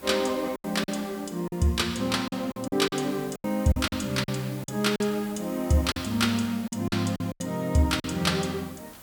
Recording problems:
hiss; slope -4 dB per octave, SNR 19 dB
lost packets; 10% of the sound replaced, filled with silence

